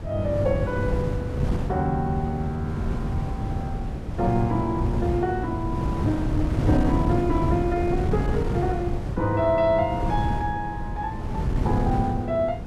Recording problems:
wind on the microphone; below 210 Hz, SNR 1 dB

